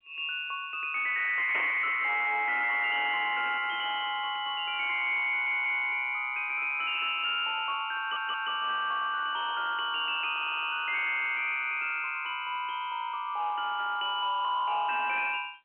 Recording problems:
phone line; 190 Hz to 3.1 kHz, G.711
distortion; hard clipping, signal-to-distortion ratio 10 dB
burst of static; at 1.5 s; peak -3 dB vs average level
audio stuttering; at 5.5 s, at 8 s and at 10 s

